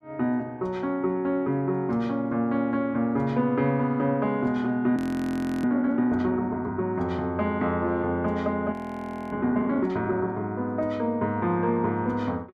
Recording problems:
frozen audio; at 5 s for 0.5 s and at 8.5 s for 0.5 s

